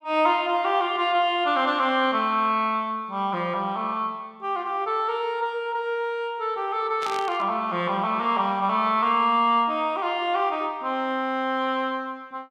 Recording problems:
static burst; at 7 s; peak -7 dB vs average level

